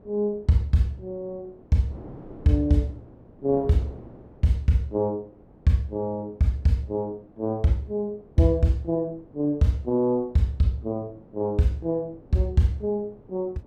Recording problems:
wind on the microphone; below 460 Hz, SNR 23 dB

